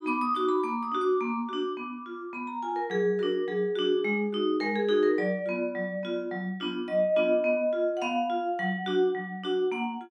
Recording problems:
none

